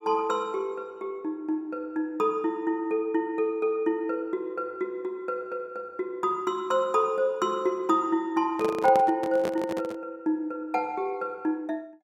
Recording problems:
handling noise; from 8.5 to 10 s; peak 0 dB vs average level

